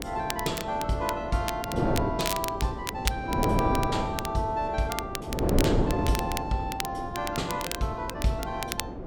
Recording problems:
wind noise; below 460 Hz, SNR 1 dB
crackling; vinyl, SNR 6 dB

